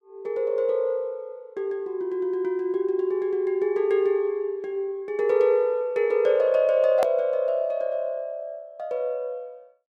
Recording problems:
hard cut with a click; at 7 s

